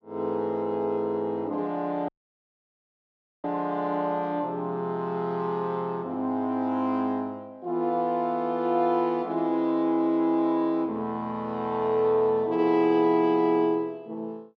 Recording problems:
dropout; at 2 s for 1.5 s

